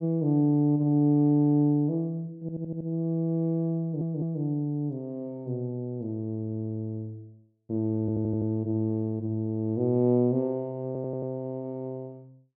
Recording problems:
audio stuttering; 4 times, first at 2.5 s

